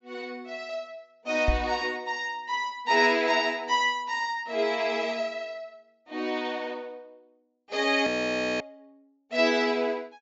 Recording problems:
treble cut off; nothing above 7.5 kHz
microphone bump; at 1.5 s; peak +4 dB vs average level
frozen audio; at 8 s for 0.5 s

